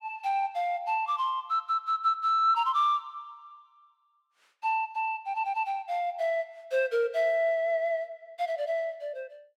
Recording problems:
none

